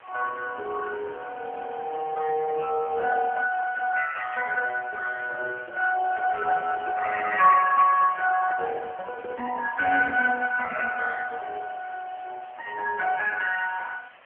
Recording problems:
telephone audio; 300 Hz to 2.2 kHz, AMR-NB
background hiss; SNR 25 dB
microphone handling noise; from 6.5 to 9.5 s; peak -8 dB vs average level

